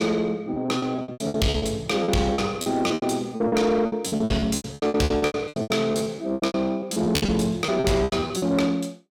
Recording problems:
distortion; soft clipping, signal-to-distortion ratio 11 dB
lost packets; 23% of the sound replaced, filled with repeated pitch periods

